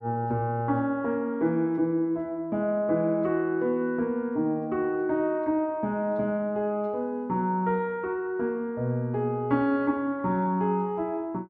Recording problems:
none

